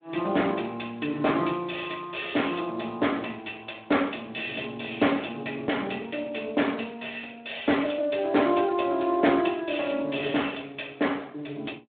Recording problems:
phone line; 170 Hz to 3.6 kHz, Speex

